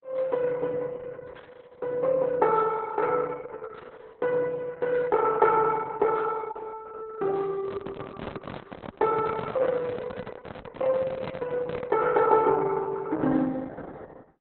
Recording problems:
codec artefacts; Opus, log-spectral distance 4 dB, nothing above 4 kHz
handling noise; from 7.5 to 12 s; peak -3 dB vs average level

